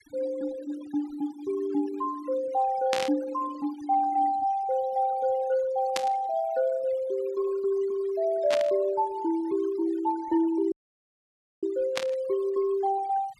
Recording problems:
noise reduction artefacts; signal-to-artefact ratio 20 dB
burst of static; 4 times, first at 3 s; peak +2 dB vs average level
dropout; at 11 s for 1 s

